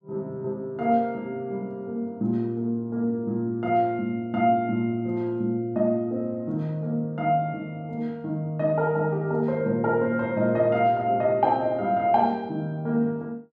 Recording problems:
none

